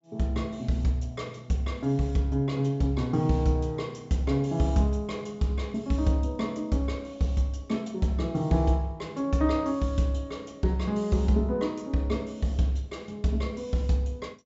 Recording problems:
treble cut off; nothing above 8 kHz

